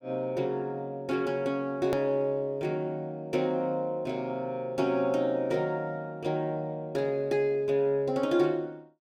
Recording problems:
edit click; at 2 s

